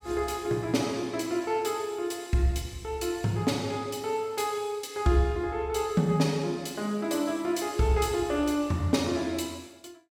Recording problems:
none

